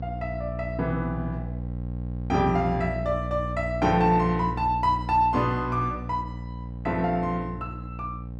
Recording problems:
hum; 60 Hz, harmonics up to 780 Hz, SNR 8 dB

